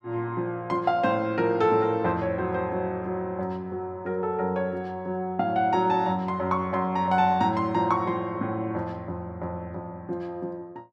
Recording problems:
none

